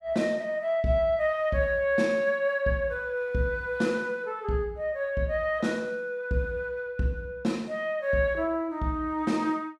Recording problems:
none

